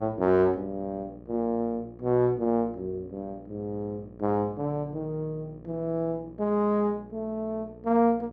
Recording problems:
hum; 60 Hz, harmonics up to 1.2 kHz, SNR 20 dB

